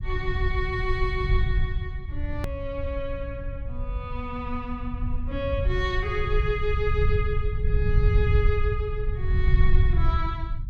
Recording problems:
low-frequency rumble; below 82 Hz, SNR -3 dB
hard cut with a click; at 2.5 s

